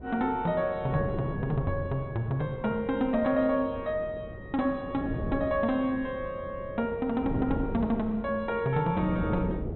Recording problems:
treble missing; nothing above 4 kHz
wind noise; below 370 Hz, SNR 9 dB

